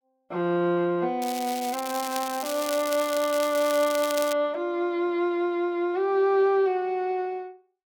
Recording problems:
crackle; from 1 to 4.5 s; loose cable, SNR 10 dB

